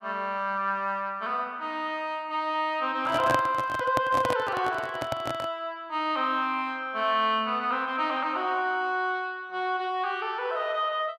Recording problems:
handling noise; from 3 to 5.5 s; peak +3 dB vs average level

